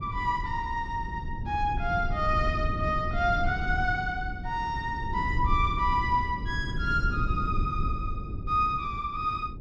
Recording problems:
low-frequency rumble; below 120 Hz, SNR 5 dB

